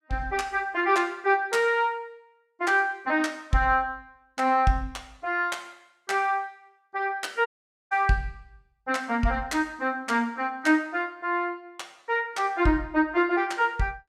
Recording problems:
audio cutting out; at 7.5 s

